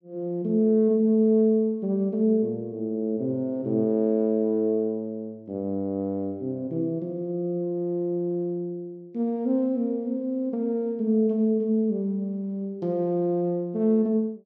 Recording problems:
none

